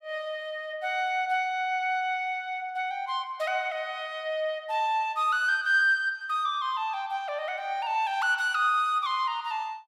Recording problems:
none

